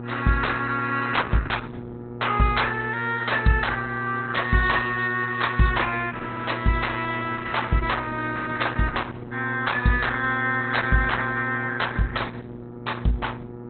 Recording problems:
lossy compression; Opus, log-spectral distance 6 dB, nothing above 4 kHz
hum; 60 Hz, harmonics up to 1.4 kHz, SNR 13 dB

